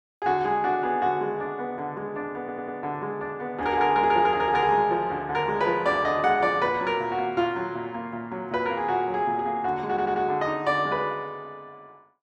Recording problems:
stutter; at 2.5 s and at 10 s

